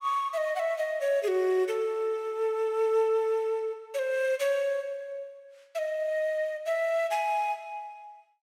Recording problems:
none

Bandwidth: 16.5 kHz